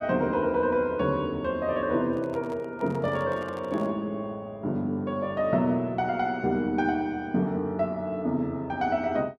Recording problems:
microphone handling noise; from 2 to 4 s; peak -12 dB vs average level

